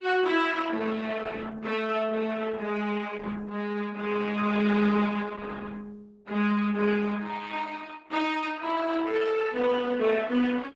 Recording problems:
lossy compression; Opus, log-spectral distance 4 dB, nothing above 8 kHz

